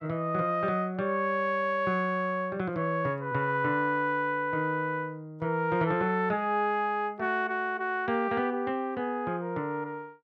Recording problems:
none

